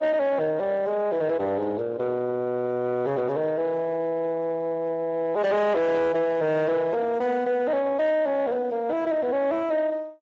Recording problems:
lossy compression; Vorbis, then Speex, log-spectral distance 2 dB
distorted audio; soft clipping, signal-to-distortion ratio 11 dB

